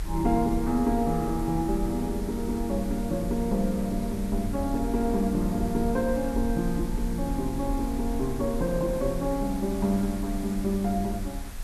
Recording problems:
background hiss; SNR 17 dB
low-frequency rumble; below 52 Hz, SNR 9 dB

